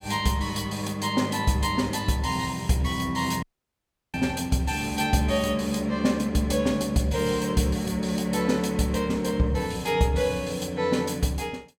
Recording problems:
audio cutting out; at 3.5 s for 0.5 s

